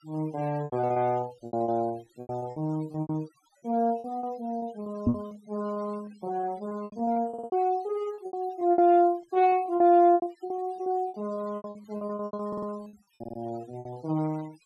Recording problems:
noise reduction artefacts; signal-to-artefact ratio 25 dB
lost packets; 18% of the sound replaced, filled with repeated pitch periods
microphone bump; at 5 s; peak +7 dB vs average level
audio stuttering; at 7.5 s, at 12 s and at 13 s

